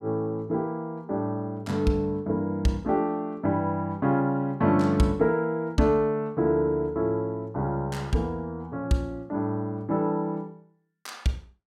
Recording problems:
none

